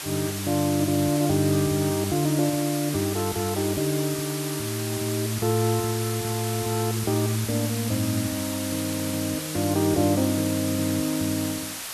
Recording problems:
background hiss; slope +1 dB per octave, SNR 6 dB

